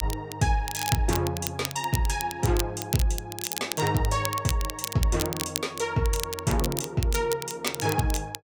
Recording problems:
crackle; vinyl, SNR 6 dB

